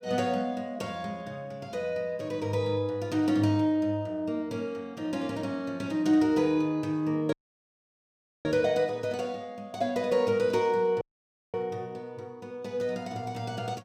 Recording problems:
audio cutting out; at 7.5 s for 1 s and at 11 s for 0.5 s

